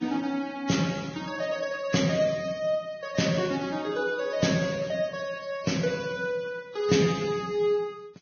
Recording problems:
codec artefacts; Vorbis, log-spectral distance 4 dB, nothing above 6.5 kHz

